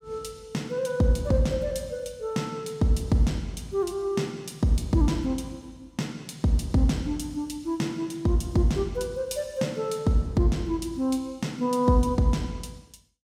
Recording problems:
none

